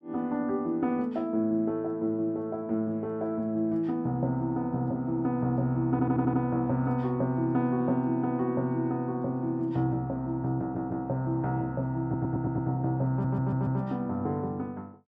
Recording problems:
stutter; 4 times, first at 6 s

